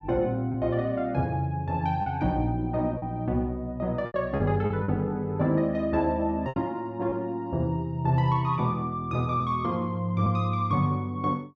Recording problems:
packet loss; 4% of the sound replaced, filled with repeated pitch periods

